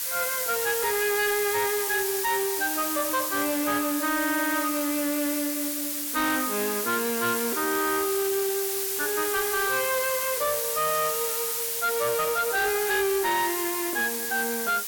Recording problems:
distortion; hard clipping, uneven, signal-to-distortion ratio 10 dB
hiss; SNR 1 dB

